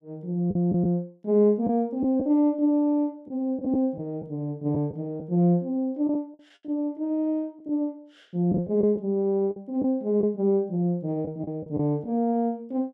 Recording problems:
lost packets; 5% of the sound replaced, filled with the last packet

